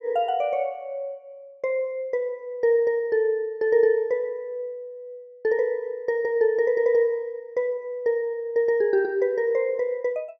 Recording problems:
none

